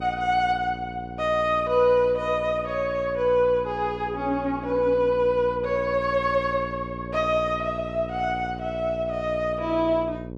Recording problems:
mains hum; 60 Hz, harmonics up to 960 Hz, SNR 13 dB

